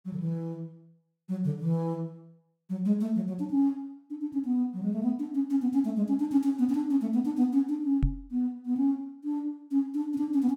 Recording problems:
knock on the microphone; at 8 s; peak +5 dB vs average level

